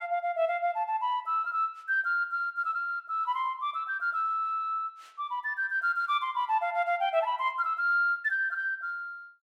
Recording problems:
none

